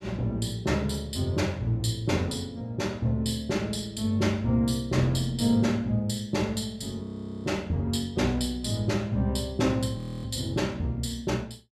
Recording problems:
frozen audio; at 7 s and at 10 s

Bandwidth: 14.5 kHz